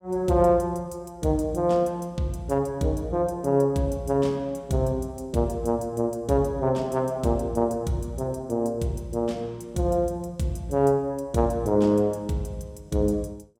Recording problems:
none

